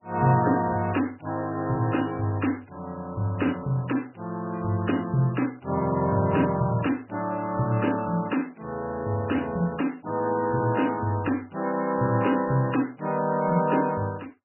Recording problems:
codec artefacts; MP3, log-spectral distance 5 dB, nothing above 2.9 kHz

